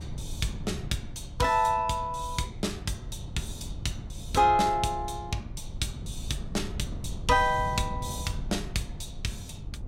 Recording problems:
wind on the microphone; below 140 Hz, SNR 10 dB

